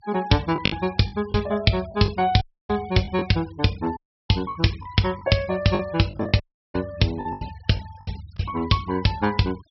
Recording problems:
low-pass filter; nothing above 5.6 kHz
denoising artefacts; signal-to-artefact ratio 22 dB
lost packets; 8% of the sound replaced, filled with the last packet
dropout; at 2.5 s, at 4 s and at 6.5 s

